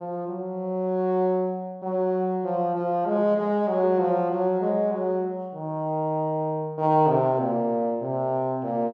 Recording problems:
none

